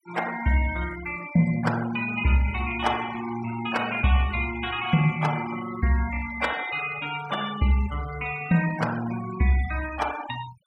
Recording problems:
denoising artefacts; signal-to-artefact ratio 14 dB

